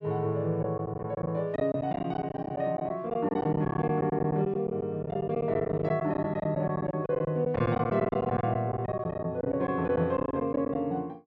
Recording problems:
lost packets; 14% of the sound replaced, filled with silence

